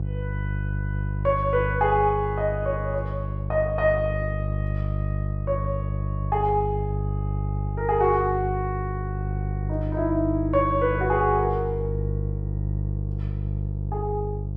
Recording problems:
hum; 50 Hz, harmonics up to 500 Hz, SNR 3 dB

